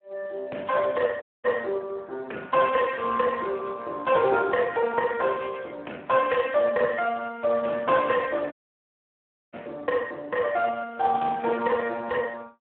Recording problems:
telephone audio; 260 Hz to 2.8 kHz, Speex
audio cutting out; at 1 s and at 8.5 s for 1 s

